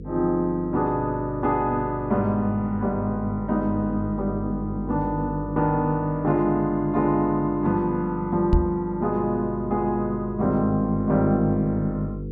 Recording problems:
electrical hum; 50 Hz, harmonics up to 500 Hz, SNR 11 dB
microphone bump; at 8.5 s; peak +7 dB vs average level

